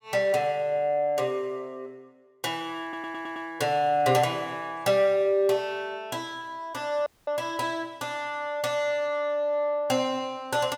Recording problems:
audio stuttering; at 3 s
dropout; at 7 s

